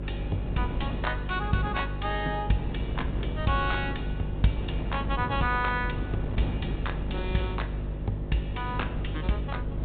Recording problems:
treble missing; nothing above 4 kHz
electrical hum; 50 Hz, harmonics up to 600 Hz, SNR 3 dB
wind on the microphone; below 280 Hz, SNR 5 dB

